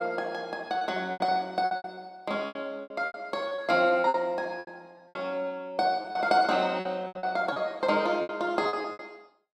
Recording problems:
lost packets; 15% of the sound replaced, filled with repeated pitch periods

